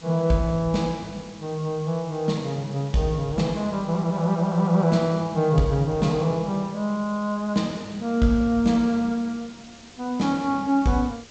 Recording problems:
codec artefacts; G.722, log-spectral distance 3 dB
hiss; SNR 22 dB

